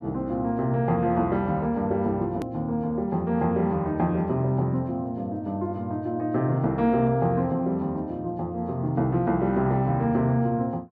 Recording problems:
click at an edit; at 2.5 s

